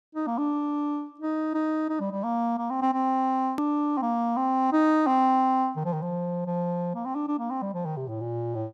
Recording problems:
hard cut with a click; at 3.5 s

